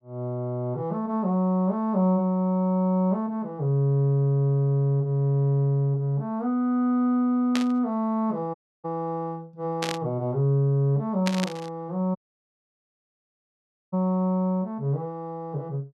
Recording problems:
static burst; at 7.5 s, at 10 s and at 11 s; peak 0 dB vs average level
audio cutting out; at 8.5 s and at 12 s for 2 s

